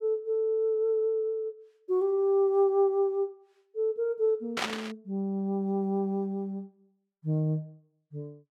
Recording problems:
static burst; at 4.5 s; peak +2 dB vs average level

